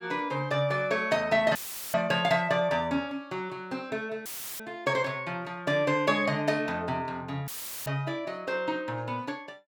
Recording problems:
dropout; at 1.5 s, at 4.5 s and at 7.5 s; filled with static

